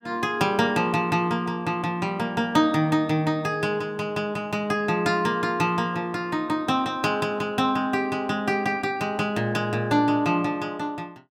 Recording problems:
none

